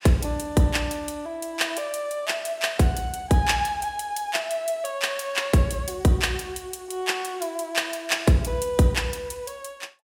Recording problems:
none

